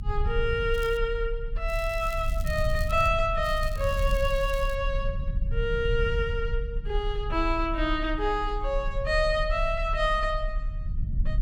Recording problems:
rumble; below 58 Hz, SNR 5 dB
crackling; at 0.5 s, from 1.5 to 3 s and from 3.5 to 5 s; loose cable, SNR 19 dB

